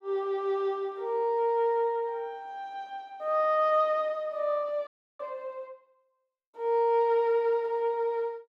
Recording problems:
audio freezing; at 5 s

